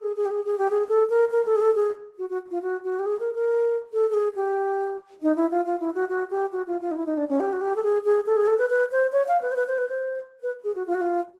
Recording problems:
lossy compression; Vorbis, then Opus, log-spectral distance 2 dB

